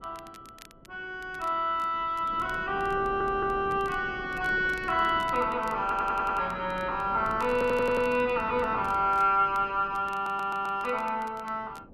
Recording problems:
wind noise; below 430 Hz, SNR 17 dB
crackling; vinyl, SNR 27 dB
stutter; 4 times, first at 3 s

